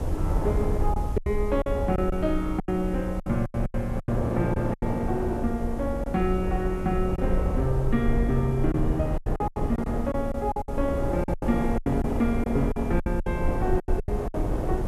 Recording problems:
background hiss; slope 0 dB per octave, SNR 25 dB
rumble; below 70 Hz, SNR 5 dB
wind on the microphone; below 530 Hz, SNR 5 dB
lost packets; 12% of the sound replaced, filled with silence

